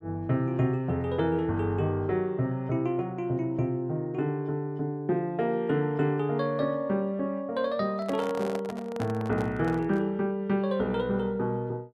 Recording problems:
handling noise; from 8 to 10 s; peak -4 dB vs average level

